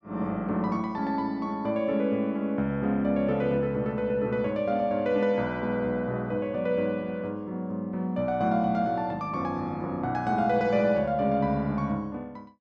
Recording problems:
none

